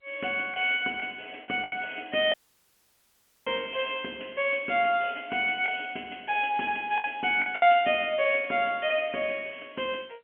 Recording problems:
telephone audio; 220 Hz to 3.2 kHz, G.711
lost packets; 4% of the sound replaced, filled with the last packet
dropout; at 2.5 s for 1 s

